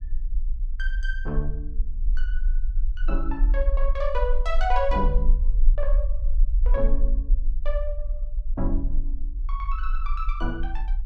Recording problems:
low-frequency rumble; below 40 Hz, strongest tone 24 Hz, SNR -4 dB

